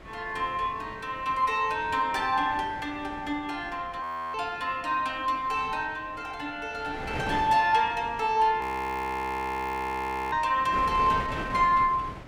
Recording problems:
wind on the microphone; below 1.1 kHz, SNR 14 dB
audio freezing; at 4 s and at 8.5 s for 1.5 s

